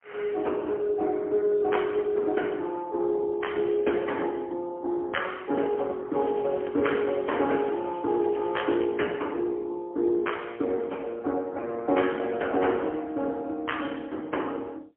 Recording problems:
telephone audio; 260 Hz to 3.3 kHz, AMR-NB, then MP3
crackle; from 6 to 9 s; loose cable, SNR 23 dB

